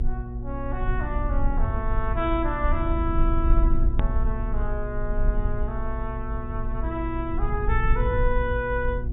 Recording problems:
low-pass filter; nothing above 4 kHz
hum; 60 Hz, harmonics up to 720 Hz, SNR 7 dB
rumble; below 54 Hz, SNR -2 dB
edit click; at 4 s

